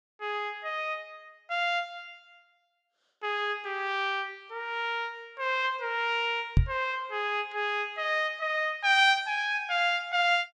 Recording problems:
microphone thump; at 6.5 s; peak +9 dB vs average level

